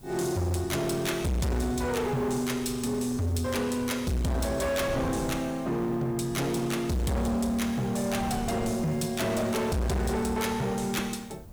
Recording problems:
distortion; hard clipping, uneven, signal-to-distortion ratio 7 dB
background hiss; slope +3 dB per octave, SNR 28 dB
wind noise; below 260 Hz, SNR 16 dB

